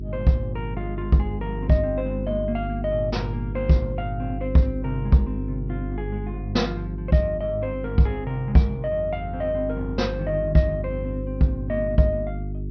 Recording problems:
treble cut off; nothing above 5.8 kHz
hum; 50 Hz, harmonics up to 400 Hz, SNR 7 dB

